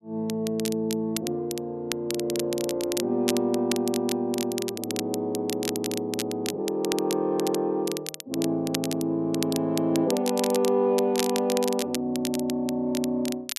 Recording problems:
crackling; vinyl, SNR 8 dB

